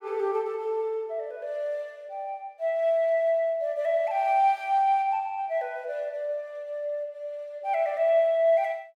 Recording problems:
none

